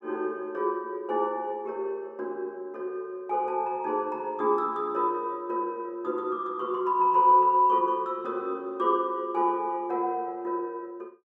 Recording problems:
none

